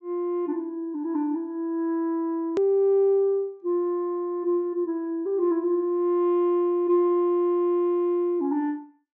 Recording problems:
treble missing; nothing above 8 kHz
hard cut with a click; at 2.5 s

